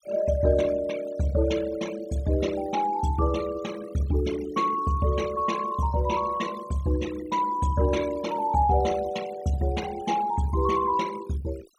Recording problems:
denoising artefacts; signal-to-artefact ratio 16 dB

